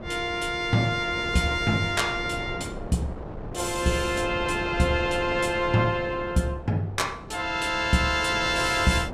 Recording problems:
wind noise; below 520 Hz, SNR 12 dB

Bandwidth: 15.5 kHz